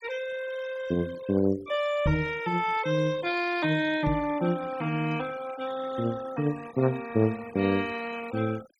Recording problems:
denoising artefacts; signal-to-artefact ratio 17 dB
knock on the microphone; at 2 s and at 4 s; peak +4 dB vs average level

